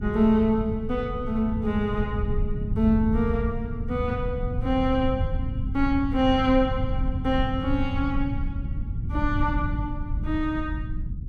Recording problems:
rumble; below 110 Hz, SNR 4 dB

